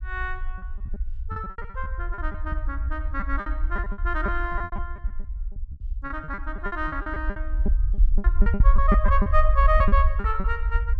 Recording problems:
rumble; below 56 Hz, SNR -2 dB
packet loss; 17% of the sound replaced, filled with repeated pitch periods

